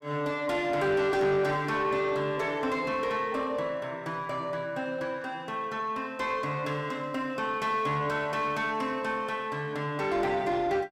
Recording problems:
distorted audio; soft clipping, signal-to-distortion ratio 11 dB

